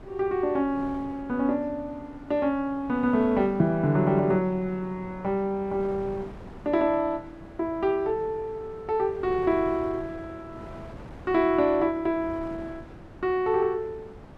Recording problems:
wind noise; below 590 Hz, SNR 18 dB

